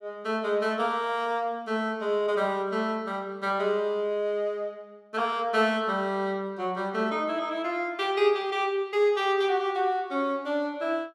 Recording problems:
none

